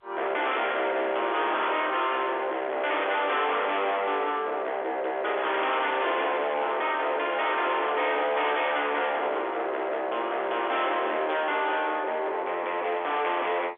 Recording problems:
telephone audio; 300 Hz to 3.6 kHz, G.711
distorted audio; soft clipping, signal-to-distortion ratio 6 dB

